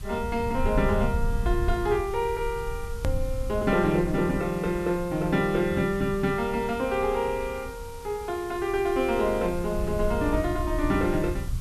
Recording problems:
background hiss; SNR 21 dB
rumble; below 84 Hz, SNR 8 dB
edit click; at 3 s

